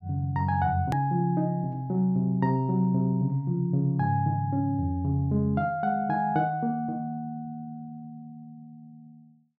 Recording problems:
edit click; at 1 s

